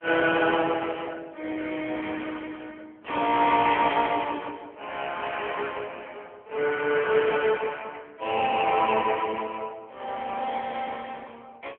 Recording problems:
telephone audio; 300 Hz to 3.2 kHz, AMR-NB

